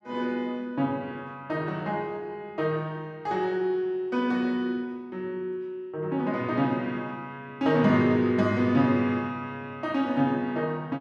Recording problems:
none

